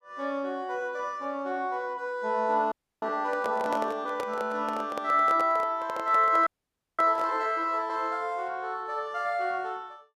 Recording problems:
audio freezing; at 2.5 s and at 6.5 s for 0.5 s
microphone handling noise; from 3.5 to 7.5 s; peak -2 dB vs average level

